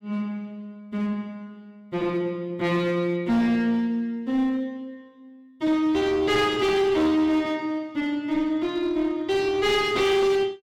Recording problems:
distortion; hard clipping, uneven, signal-to-distortion ratio 10 dB

